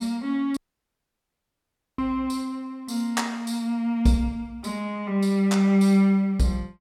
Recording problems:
audio cutting out; at 0.5 s for 1.5 s

